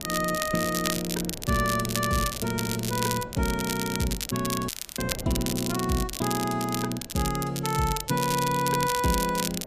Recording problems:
wind noise; below 510 Hz, SNR 16 dB
crackle; vinyl, SNR 5 dB
dropout; at 4.5 s

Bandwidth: 14.5 kHz